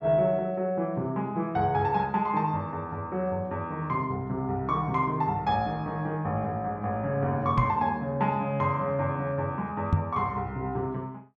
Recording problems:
knock on the microphone; at 7.5 s and at 10 s; peak +8 dB vs average level

